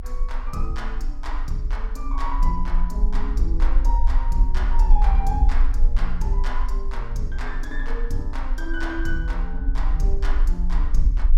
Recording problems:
rumble; below 40 Hz, strongest tone 22 Hz, SNR -6 dB

